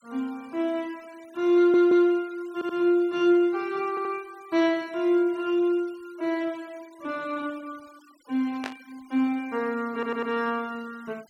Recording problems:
noise reduction artefacts; signal-to-artefact ratio 28 dB
stutter; 4 times, first at 1.5 s
static burst; at 8.5 s; peak -5 dB vs average level

